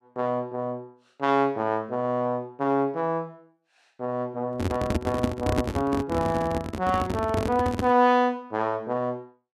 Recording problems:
handling noise; from 4.5 to 8 s; peak +5 dB vs average level

